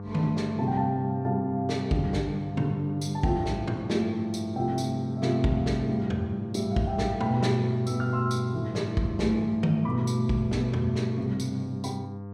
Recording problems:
hum; 50 Hz, harmonics up to 1.2 kHz, SNR 11 dB

